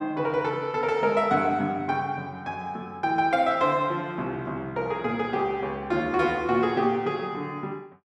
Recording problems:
none

